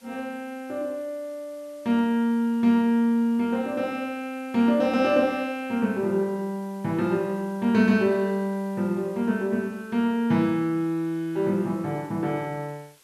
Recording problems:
background hiss; slope 0 dB per octave, SNR 29 dB

